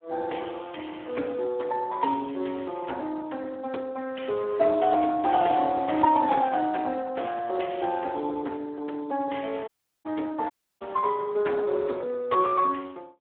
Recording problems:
phone line; 240 Hz to 4 kHz, Speex
dropout; at 9.5 s and at 11 s

